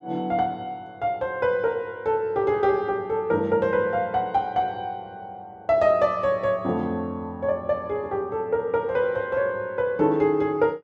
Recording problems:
none

